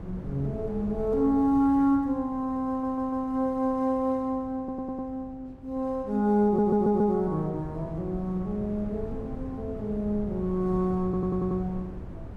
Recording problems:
wind on the microphone; below 220 Hz, SNR 14 dB
stutter; 4 times, first at 2.5 s

